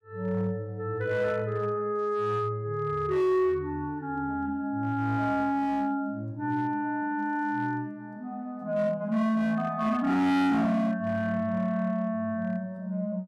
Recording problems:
distortion; hard clipping, signal-to-distortion ratio 8 dB

